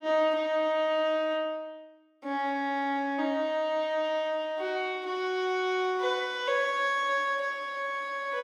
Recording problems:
none

